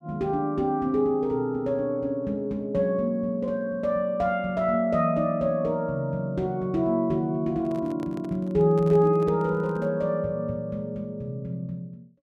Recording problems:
handling noise; from 7.5 to 10 s; peak -11 dB vs average level

